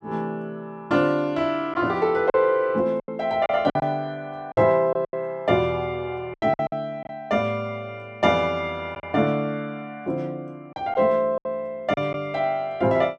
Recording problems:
packet loss; 6% of the sound replaced, filled with silence

